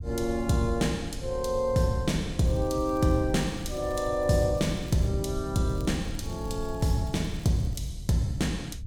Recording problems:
rumble; below 98 Hz, SNR 12 dB
crackle; from 2.5 to 5 s and from 5.5 to 8 s; loose cable, SNR 27 dB

